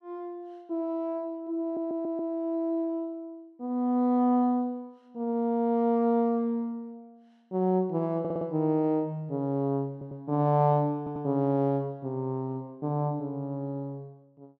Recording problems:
stutter; 4 times, first at 1.5 s

